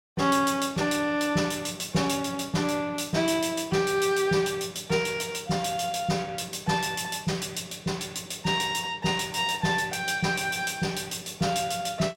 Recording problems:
none

